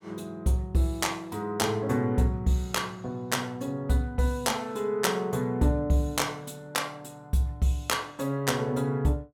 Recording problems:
none

